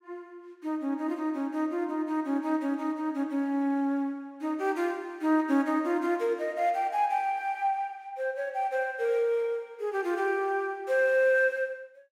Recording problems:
none

